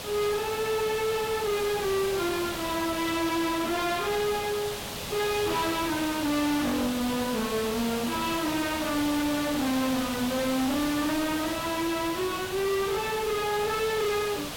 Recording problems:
distortion; soft clipping, signal-to-distortion ratio 6 dB
hiss; slope -2 dB per octave, SNR 6 dB

